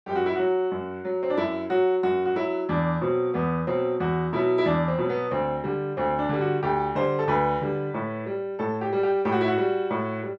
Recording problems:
none

